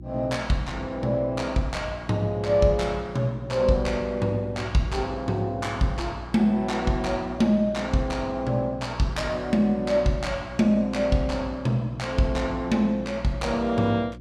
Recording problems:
hum; 60 Hz, harmonics up to 360 Hz, SNR 16 dB

